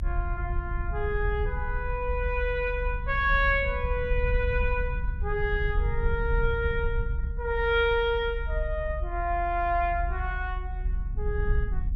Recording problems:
low-frequency rumble; below 66 Hz, strongest tone 40 Hz, SNR 3 dB

